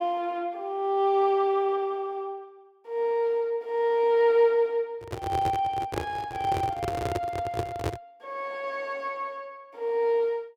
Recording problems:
handling noise; from 5 to 8 s; peak +2 dB vs average level

